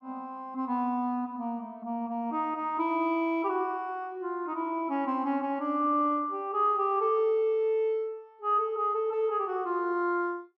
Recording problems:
none

